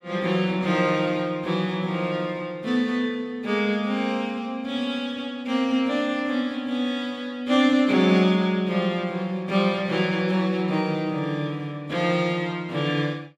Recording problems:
none

